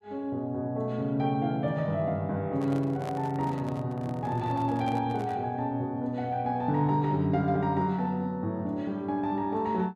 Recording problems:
microphone handling noise; from 2.5 to 5.5 s; peak -6 dB vs average level

